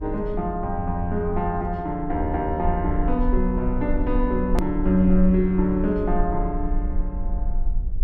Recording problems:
rumble; below 46 Hz, SNR 6 dB
edit click; at 4.5 s

